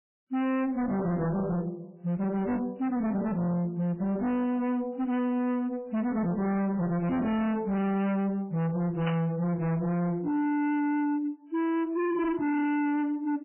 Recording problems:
lossy compression; MP3, log-spectral distance 2 dB, nothing above 2.4 kHz
distorted audio; hard clipping, signal-to-distortion ratio 6 dB
static burst; at 9 s; peak -3 dB vs average level

